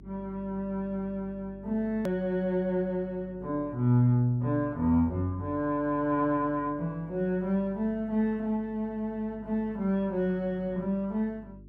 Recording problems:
electrical hum; 50 Hz, harmonics up to 400 Hz, SNR 22 dB
edit click; at 2 s

